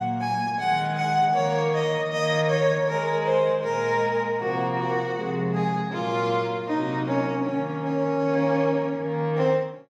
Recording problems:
none

